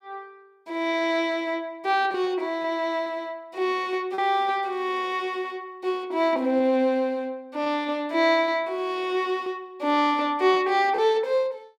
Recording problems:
lost packets; 2% of the sound replaced, filled with repeated pitch periods

